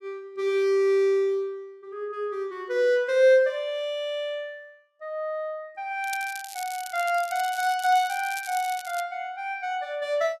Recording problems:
crackle; from 6 to 9 s; loose cable, SNR 14 dB

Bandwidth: 13 kHz